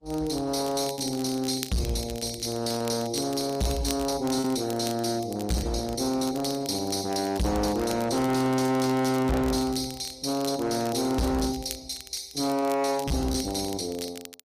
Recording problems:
lossy codec; Opus, log-spectral distance 4 dB, nothing above 15.1 kHz
distorted audio; hard clipping, signal-to-distortion ratio 6 dB
crackle; vinyl, SNR 15 dB
lost packets; 3% of the sound replaced, filled with repeated pitch periods

